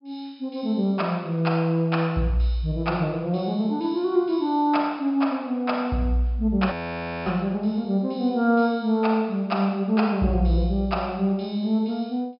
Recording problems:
low-pass filter; nothing above 5.5 kHz
frozen audio; at 6.5 s for 0.5 s

